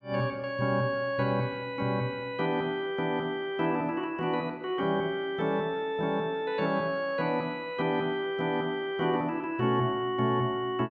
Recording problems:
none

